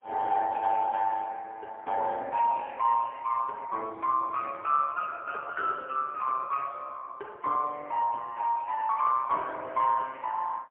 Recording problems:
phone line; 390 Hz to 3.4 kHz, AMR-NB, then MP3

